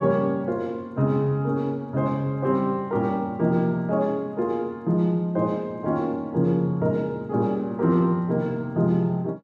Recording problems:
none

